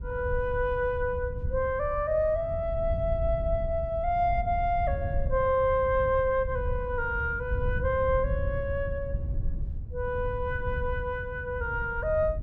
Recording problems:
wind on the microphone; below 90 Hz, SNR 6 dB

